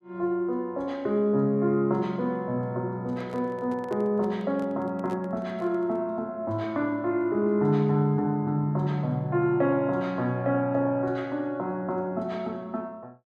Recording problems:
microphone handling noise; from 3 to 6 s; peak -10 dB vs average level

